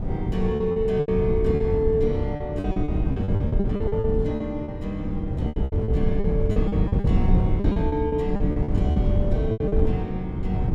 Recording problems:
wind noise; below 150 Hz, SNR -1 dB
packet loss; 15% of the sound replaced, filled with repeated pitch periods

